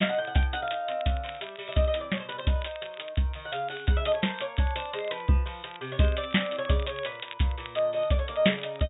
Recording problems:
low-pass filter; nothing above 4 kHz
crackling; vinyl, SNR 18 dB

